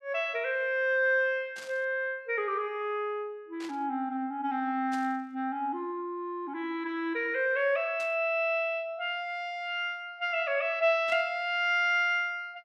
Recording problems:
static burst; 5 times, first at 1.5 s; peak -11 dB vs average level

